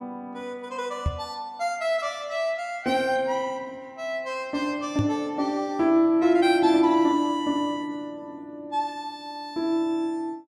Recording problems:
microphone bump; at 1 s and at 5 s; peak +3 dB vs average level

